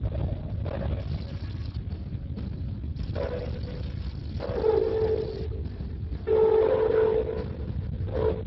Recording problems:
lossy compression; MP2, then Speex, log-spectral distance 2 dB, nothing above 15.6 kHz
distorted audio; hard clipping, signal-to-distortion ratio 10 dB
low-frequency rumble; below 440 Hz, SNR 8 dB
crackling; at 1 s and from 3 to 5.5 s; loose cable, SNR 27 dB

